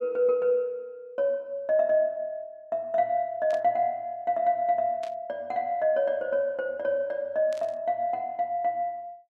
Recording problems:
static burst; at 3.5 s, at 5 s and at 7.5 s; peak -14 dB vs average level

